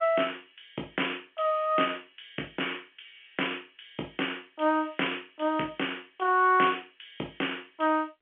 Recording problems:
telephone audio; 220 Hz to 3.3 kHz, G.711

